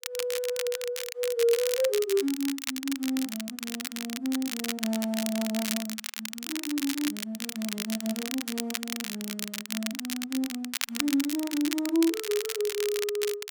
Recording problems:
crackle; vinyl, SNR 4 dB

